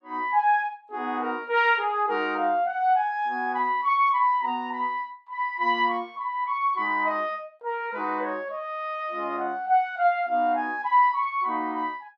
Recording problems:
none

